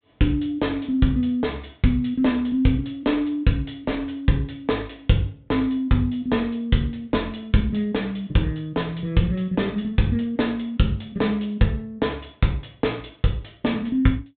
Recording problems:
treble missing; nothing above 4 kHz

